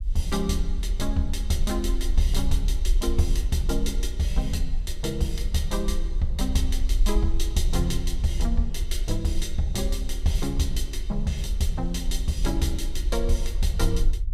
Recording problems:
low-frequency rumble; below 46 Hz, SNR 1 dB

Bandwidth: 15 kHz